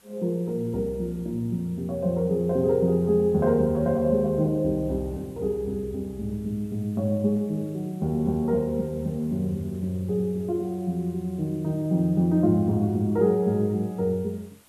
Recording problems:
hiss; slope -2 dB per octave, SNR 30 dB

